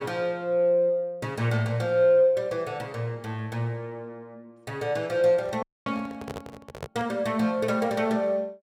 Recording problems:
microphone handling noise; from 5.5 to 7 s; peak -5 dB vs average level
dropout; at 5.5 s

